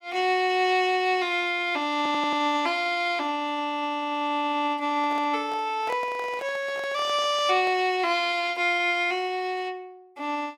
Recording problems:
audio stuttering; at 2 s
handling noise; from 5 to 8 s; peak -8 dB vs average level

